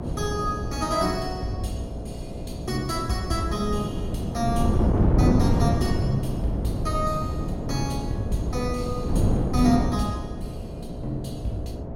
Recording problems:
electrical hum; 60 Hz, harmonics up to 720 Hz, SNR 12 dB
wind noise; below 280 Hz, SNR -1 dB

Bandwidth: 16.5 kHz